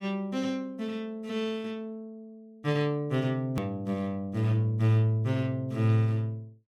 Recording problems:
edit click; at 3.5 s

